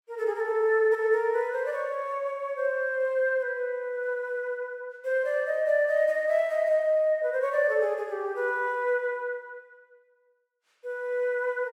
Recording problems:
none

